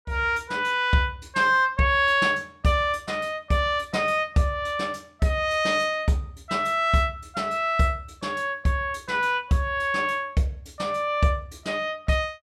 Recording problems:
none

